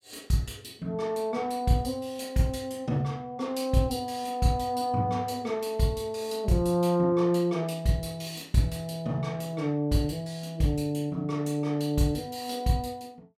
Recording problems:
none

